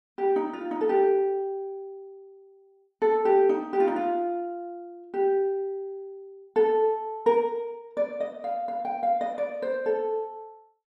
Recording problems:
none

